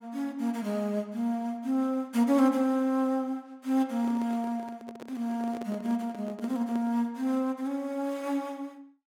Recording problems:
handling noise; from 4 to 7 s; peak -8 dB vs average level

